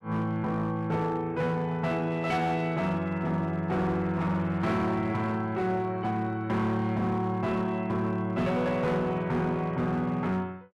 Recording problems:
distortion; hard clipping, signal-to-distortion ratio 12 dB

